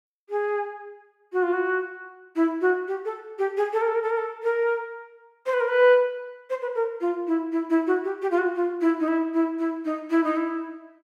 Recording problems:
none

